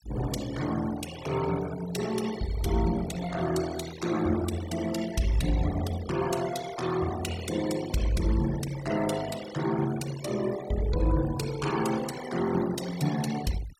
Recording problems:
denoising artefacts; signal-to-artefact ratio 12 dB

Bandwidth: 16 kHz